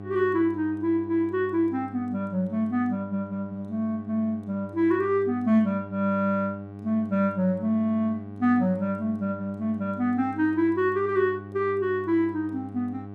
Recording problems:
electrical hum; 50 Hz, harmonics up to 1.2 kHz, SNR 14 dB

